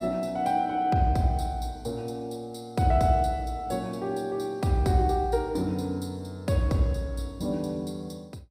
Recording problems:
none

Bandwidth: 15.5 kHz